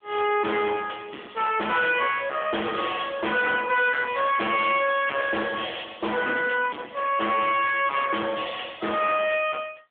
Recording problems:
telephone audio; 260 Hz to 3.4 kHz, AMR-NB
distortion; hard clipping, signal-to-distortion ratio 7 dB

